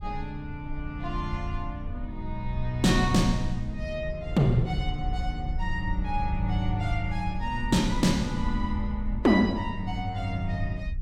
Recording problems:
low-frequency rumble; below 66 Hz, SNR 7 dB

